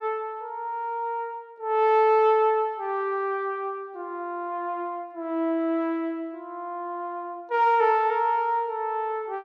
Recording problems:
none

